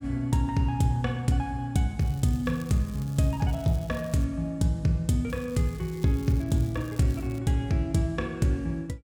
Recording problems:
crackle; from 2 to 4 s and from 5.5 to 7.5 s; loose cable, SNR 24 dB

